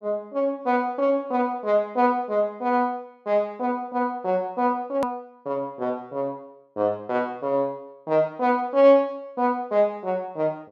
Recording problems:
edit click; at 5 s

